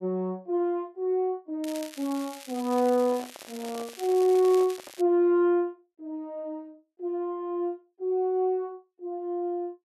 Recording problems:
crackle; from 1.5 to 5 s; loose cable, SNR 17 dB
microphone handling noise; from 3 to 5 s; peak -11 dB vs average level

